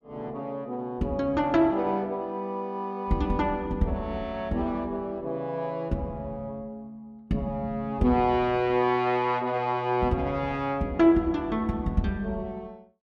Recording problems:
none

